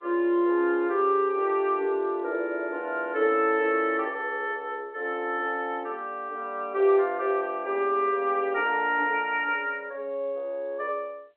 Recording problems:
telephone audio; 240 Hz to 3.5 kHz, G.711

